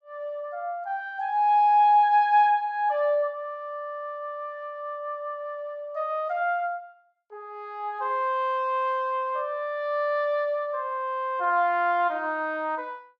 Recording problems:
none

